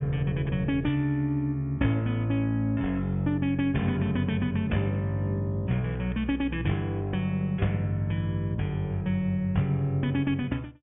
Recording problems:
treble cut off; nothing above 3.6 kHz

